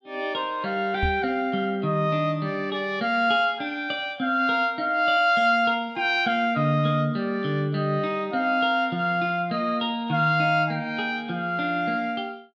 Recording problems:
microphone thump; at 1 s; peak 0 dB vs average level

